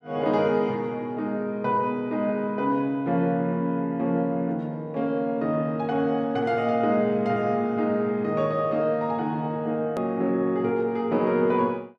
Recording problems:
click at an edit; at 10 s

